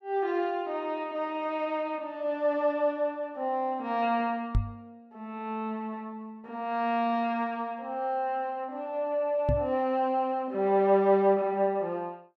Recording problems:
microphone bump; at 4.5 s and at 9.5 s; peak +5 dB vs average level

